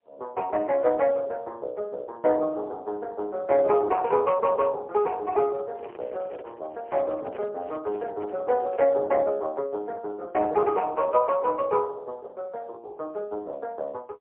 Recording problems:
telephone audio; 340 Hz to 2.8 kHz, AMR-NB, then MP3
handling noise; from 5.5 to 9 s; peak -10 dB vs average level

